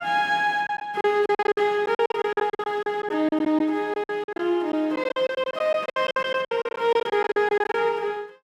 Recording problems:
packet loss; 17% of the sound replaced, filled with silence

